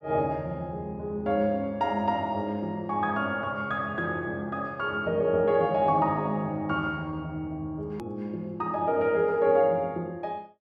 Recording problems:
hard cut with a click; at 8 s

